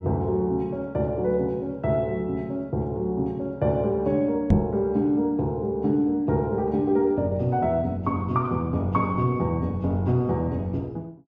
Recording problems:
microphone bump; at 4.5 s; peak +9 dB vs average level

